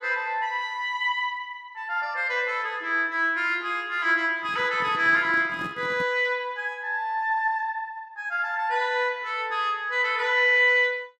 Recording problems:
handling noise; from 4.5 to 6 s; peak -10 dB vs average level

